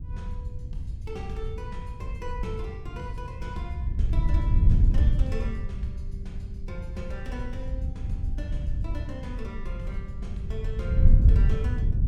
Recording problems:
wind on the microphone; below 88 Hz, SNR -11 dB

